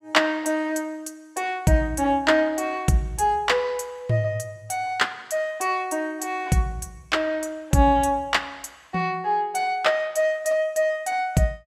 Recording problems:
none

